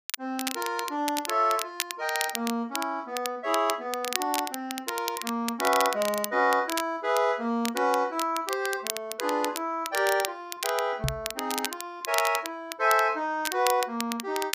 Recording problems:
crackle; vinyl, SNR 7 dB
microphone thump; at 11 s; peak +2 dB vs average level

